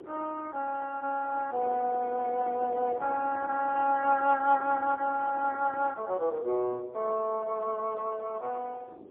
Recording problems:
phone line; 320 Hz to 3.3 kHz, AMR-NB, then MP3
wind noise; below 460 Hz, SNR 16 dB

